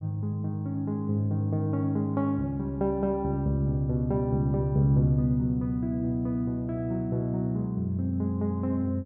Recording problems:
none

